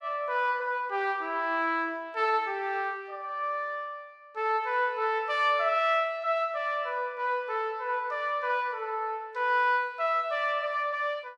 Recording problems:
none

